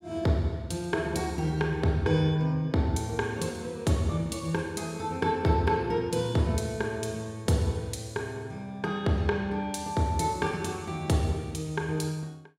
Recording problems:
none

